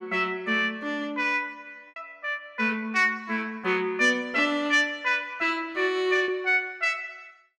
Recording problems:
packet loss; 1.7% of the sound replaced, filled with repeated pitch periods

